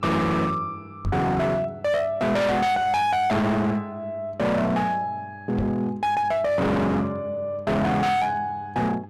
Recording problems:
distorted audio; hard clipping, signal-to-distortion ratio 6 dB
hum; 50 Hz, harmonics up to 1.3 kHz, SNR 21 dB
microphone bump; at 1 s and at 5.5 s; peak +1 dB vs average level

